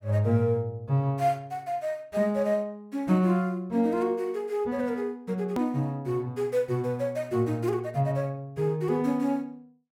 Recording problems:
hard cut with a click; at 5.5 s

